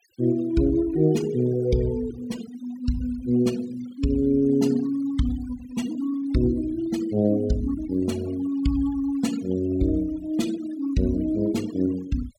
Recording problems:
denoising artefacts; signal-to-artefact ratio 19 dB

